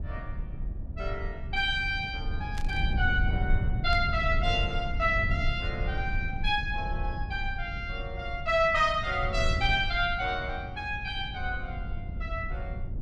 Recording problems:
low-frequency rumble; below 92 Hz, SNR 5 dB
burst of static; at 2.5 s and at 4 s; peak -9 dB vs average level

